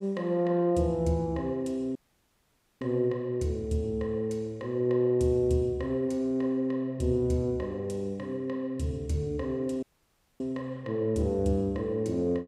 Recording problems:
dropout; at 2 s for 1 s and at 10 s for 0.5 s

